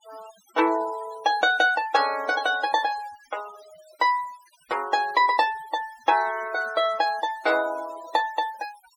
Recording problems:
denoising artefacts; signal-to-artefact ratio 18 dB

